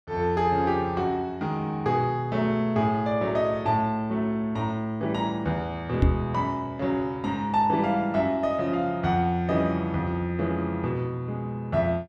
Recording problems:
microphone bump; at 6 s; peak +7 dB vs average level

